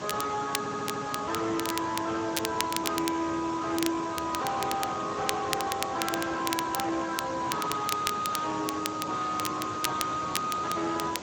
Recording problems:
codec artefacts; Speex, log-spectral distance 10 dB
distorted audio; soft clipping, signal-to-distortion ratio 5 dB
background hiss; slope -5 dB per octave, SNR 9 dB
crackling; vinyl, SNR 6 dB
stutter; at 0.5 s

